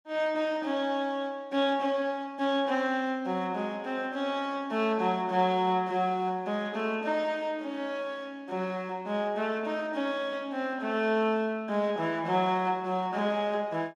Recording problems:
none

